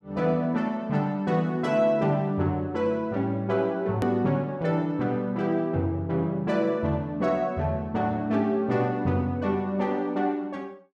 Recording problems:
edit click; at 4 s

